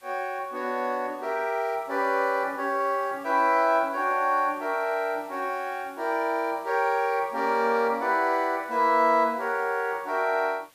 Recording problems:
background hiss; slope 0 dB per octave, SNR 28 dB

